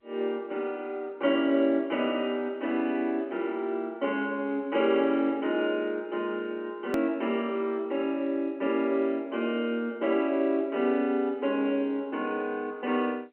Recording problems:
telephone audio; 240 Hz to 3.3 kHz, G.711
edit click; at 7 s

